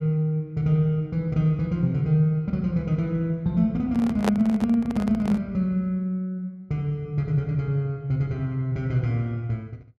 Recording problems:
microphone handling noise; from 4 to 5.5 s; peak +3 dB vs average level

